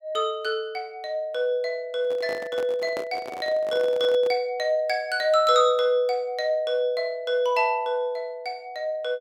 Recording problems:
microphone handling noise; from 2 to 4.5 s; peak -5 dB vs average level

